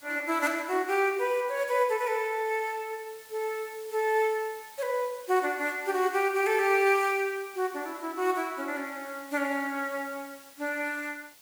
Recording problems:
hiss; slope +1 dB per octave, SNR 21 dB

